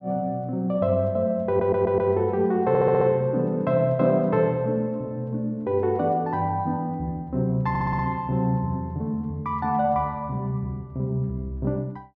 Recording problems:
stutter; at 1.5 s, at 2.5 s and at 7.5 s

